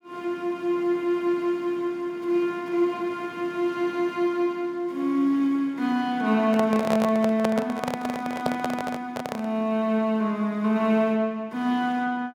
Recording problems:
microphone handling noise; from 6.5 to 9.5 s; peak +2 dB vs average level

